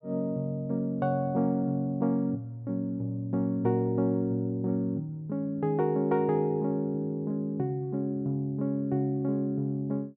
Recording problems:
none

